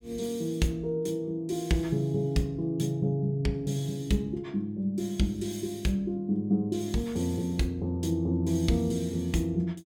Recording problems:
none

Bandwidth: 18.5 kHz